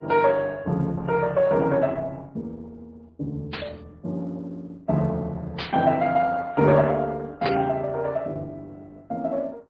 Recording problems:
codec artefacts; MP3, then Opus, log-spectral distance 3 dB
burst of static; at 3.5 s, at 5.5 s and at 7.5 s; peak 0 dB vs average level

